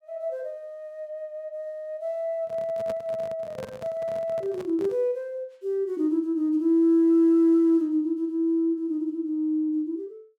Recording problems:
handling noise; from 2.5 to 5 s; peak -8 dB vs average level

